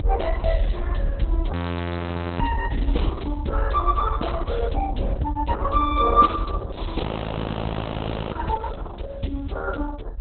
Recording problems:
lossy compression; Opus, log-spectral distance 2 dB, nothing above 3.9 kHz
rumble; below 86 Hz, SNR 0 dB
audio freezing; at 1.5 s for 1 s and at 7 s for 1.5 s

